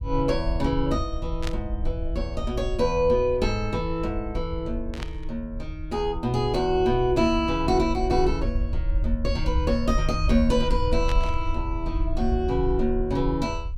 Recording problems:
rumble; below 62 Hz, SNR 5 dB
burst of static; at 1.5 s, at 5 s and at 11 s; peak -4 dB vs average level

